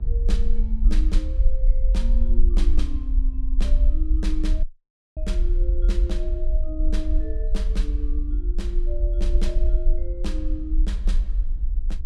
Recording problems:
hum; 60 Hz, harmonics up to 780 Hz, SNR 22 dB
rumble; below 46 Hz, SNR -11 dB
wind noise; below 90 Hz, SNR 9 dB
audio cutting out; at 4.5 s for 0.5 s

